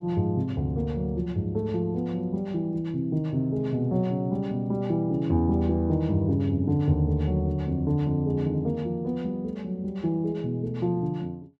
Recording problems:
none

